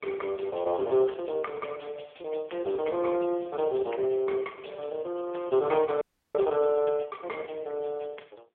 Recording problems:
telephone audio; 370 Hz to 3.3 kHz, AMR-NB
frozen audio; at 6 s

